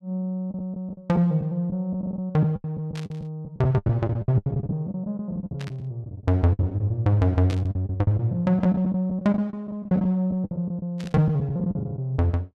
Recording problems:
packet loss; 16% of the sound replaced, filled with the last packet
burst of static; 4 times, first at 3 s; peak -9 dB vs average level

